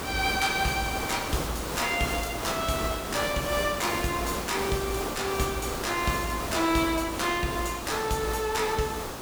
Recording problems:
background hiss; slope -5 dB per octave, SNR 4 dB

